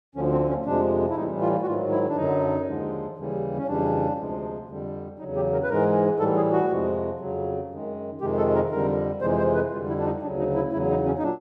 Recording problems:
none

